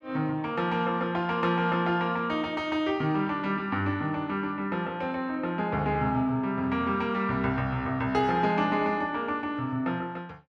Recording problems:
none

